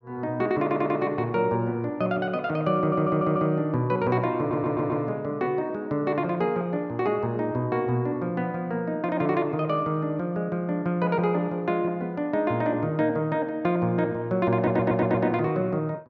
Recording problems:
audio stuttering; 4 times, first at 0.5 s

